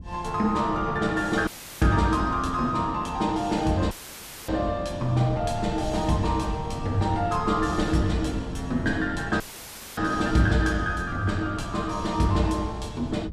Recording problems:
wind on the microphone; below 160 Hz, SNR 12 dB
dropout; at 1.5 s, at 4 s for 0.5 s and at 9.5 s for 0.5 s; filled with static

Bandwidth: 14.5 kHz